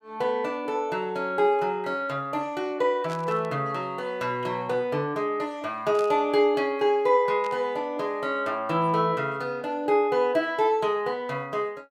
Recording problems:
static burst; at 3 s, at 6 s and at 7.5 s; peak -11 dB vs average level

